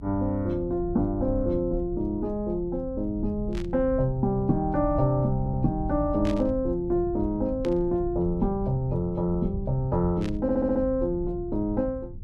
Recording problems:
low-frequency rumble; below 100 Hz, SNR 10 dB
burst of static; 4 times, first at 3.5 s; peak -9 dB vs average level
stutter; at 5.5 s and at 10 s

